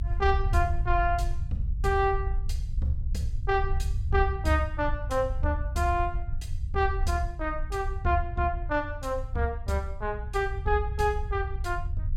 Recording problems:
rumble; below 74 Hz, SNR 4 dB

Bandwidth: 16.5 kHz